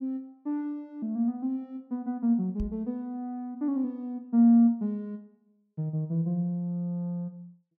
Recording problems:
knock on the microphone; at 2.5 s; peak -3 dB vs average level

